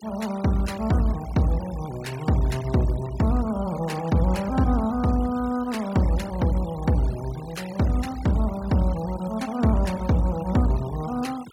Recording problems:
noise reduction artefacts; signal-to-artefact ratio 19 dB

